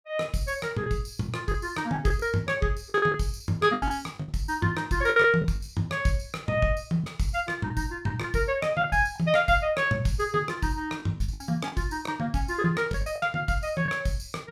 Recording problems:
packet loss; 8% of the sound replaced, filled with the last packet

